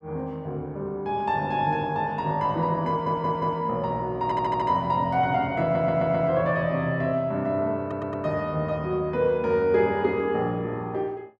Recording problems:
stutter; 4 times, first at 3 s

